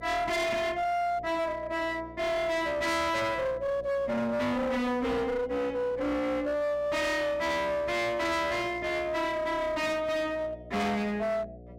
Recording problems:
distorted audio; hard clipping, uneven, signal-to-distortion ratio 6 dB
hum; 60 Hz, harmonics up to 720 Hz, SNR 20 dB

